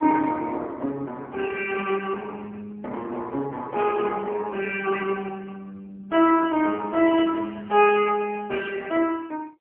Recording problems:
telephone audio; 240 Hz to 3.1 kHz, AMR-NB

